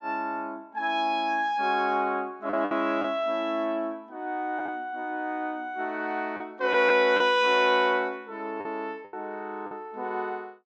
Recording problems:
lost packets; 4% of the sound replaced, filled with the last packet

